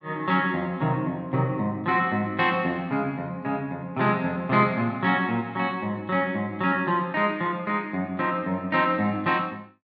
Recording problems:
none

